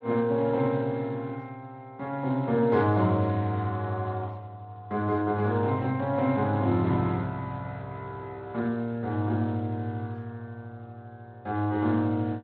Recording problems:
lossy codec; Speex, log-spectral distance 2 dB

